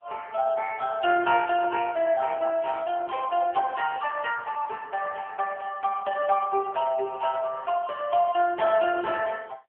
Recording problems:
phone line; 240 Hz to 3.1 kHz, AMR-NB

